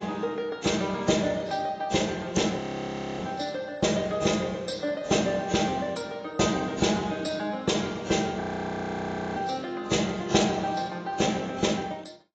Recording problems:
codec artefacts; AAC, log-spectral distance 4 dB, nothing above 7.3 kHz
audio freezing; at 2.5 s for 0.5 s and at 8.5 s for 1 s

